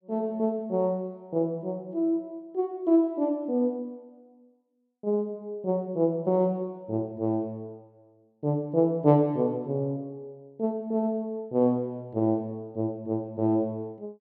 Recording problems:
none

